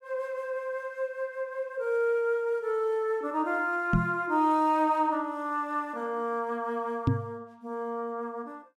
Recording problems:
microphone bump; at 4 s and at 7 s; peak +8 dB vs average level

